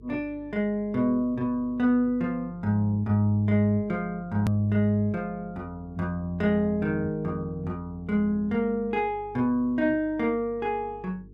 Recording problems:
hum; 50 Hz, harmonics up to 450 Hz, SNR 23 dB
edit click; at 4.5 s

